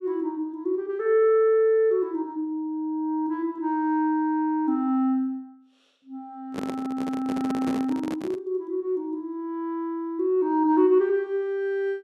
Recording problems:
microphone handling noise; from 6.5 to 8.5 s; peak -3 dB vs average level

